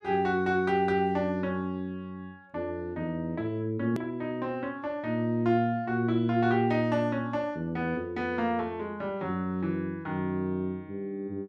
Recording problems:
hard cut with a click; at 4 s

